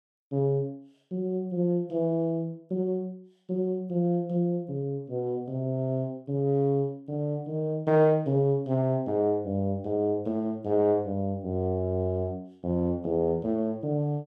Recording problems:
none

